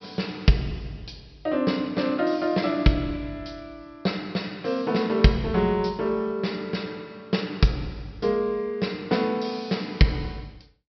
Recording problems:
treble cut off; nothing above 5.6 kHz

